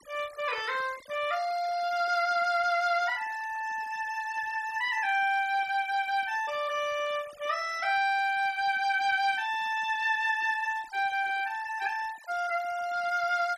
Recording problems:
denoising artefacts; signal-to-artefact ratio 20 dB

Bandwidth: 14.5 kHz